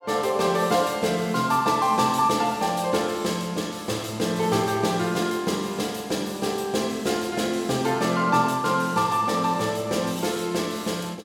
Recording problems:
none

